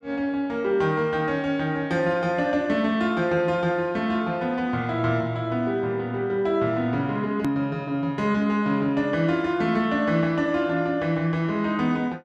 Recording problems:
edit click; at 7.5 s

